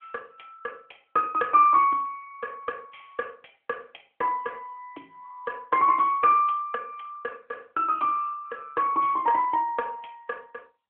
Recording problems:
phone line; 260 Hz to 2.7 kHz, AMR-NB

